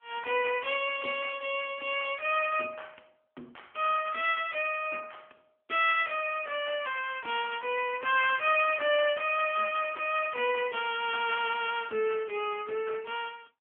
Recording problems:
telephone audio; 280 Hz to 3.4 kHz, AMR-NB

